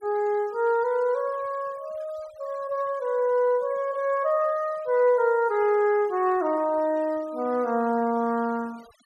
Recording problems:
denoising artefacts; signal-to-artefact ratio 27 dB

